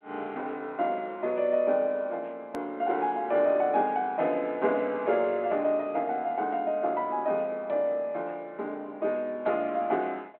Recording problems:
phone line; 220 Hz to 3.4 kHz, G.726
edit click; at 2.5 s

